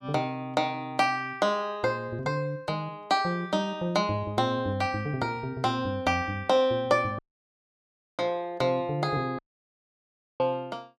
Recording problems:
dropout; at 7 s for 1 s and at 9.5 s for 1 s

